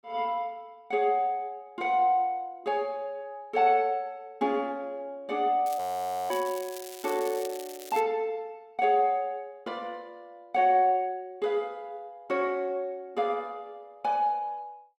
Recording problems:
crackle; from 5.5 to 8 s; loose cable, SNR 15 dB
frozen audio; at 6 s for 0.5 s

